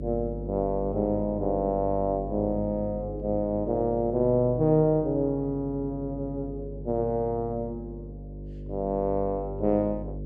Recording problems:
electrical hum; 50 Hz, harmonics up to 600 Hz, SNR 11 dB

